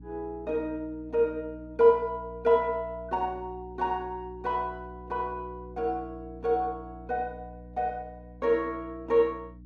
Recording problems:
hum; 60 Hz, harmonics up to 300 Hz, SNR 18 dB

